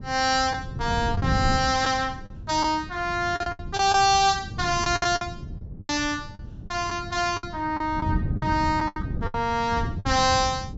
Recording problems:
treble missing; nothing above 8 kHz
wind on the microphone; below 180 Hz, SNR 9 dB
packet loss; 9% of the sound replaced, filled with the last packet

